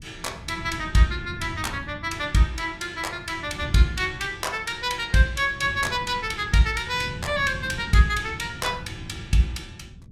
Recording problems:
wind noise; below 170 Hz, SNR 14 dB

